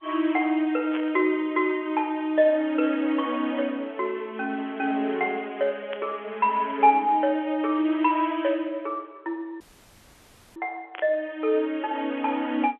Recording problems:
phone line; 300 Hz to 3.4 kHz, G.711
static burst; at 1 s, at 6 s and at 11 s; peak -7 dB vs average level
audio cutting out; at 9.5 s for 1 s

